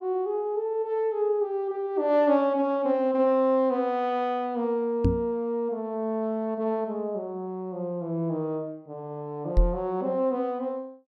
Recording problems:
knock on the microphone; at 5 s and at 9.5 s; peak +7 dB vs average level

